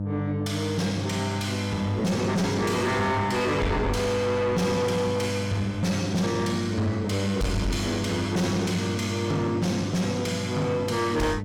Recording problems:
distorted audio; soft clipping, signal-to-distortion ratio 7 dB
electrical hum; 50 Hz, harmonics up to 600 Hz, SNR 5 dB

